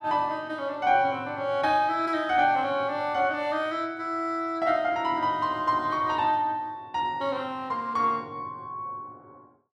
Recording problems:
none

